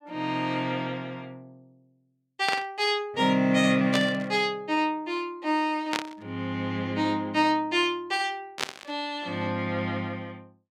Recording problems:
static burst; 4 times, first at 2.5 s; peak +3 dB vs average level

